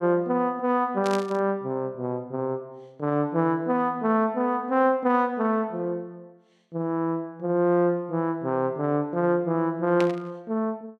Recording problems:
static burst; at 1 s and at 10 s; peak -3 dB vs average level

